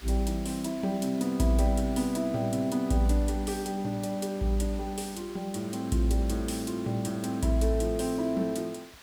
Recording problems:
hiss; slope -1 dB per octave, SNR 20 dB

